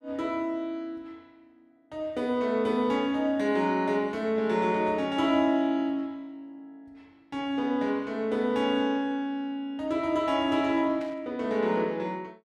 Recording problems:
burst of static; at 11 s; peak -14 dB vs average level

